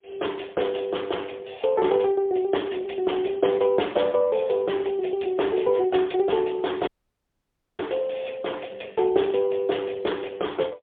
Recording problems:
phone line; 240 Hz to 3.6 kHz, AMR-NB, then MP3
dropout; at 7 s for 1 s

